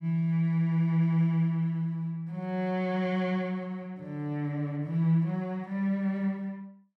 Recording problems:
none

